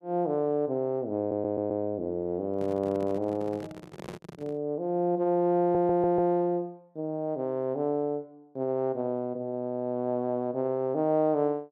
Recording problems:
audio stuttering; at 1 s and at 5.5 s
handling noise; from 2.5 to 4.5 s; peak -7 dB vs average level

